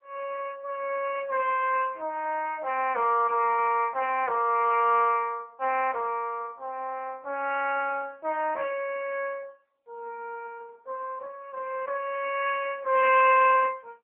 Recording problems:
phone line; 320 Hz to 3.1 kHz, AMR-NB

